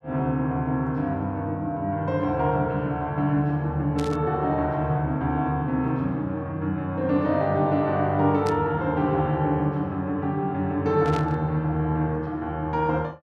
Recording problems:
static burst; at 4 s, at 8.5 s and at 11 s; peak -8 dB vs average level

